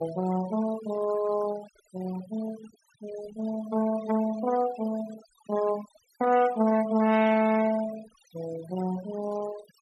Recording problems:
denoising artefacts; signal-to-artefact ratio 16 dB

